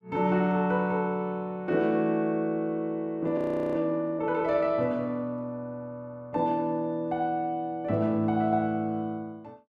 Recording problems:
frozen audio; at 3.5 s

